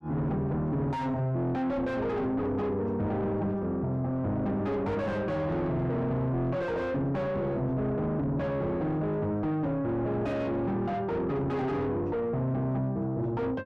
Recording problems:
distortion; soft clipping, signal-to-distortion ratio 6 dB

